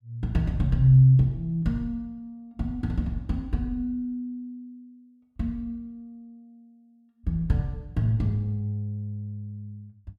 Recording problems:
none

